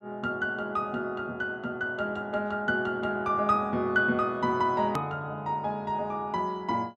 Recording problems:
edit click; at 5 s

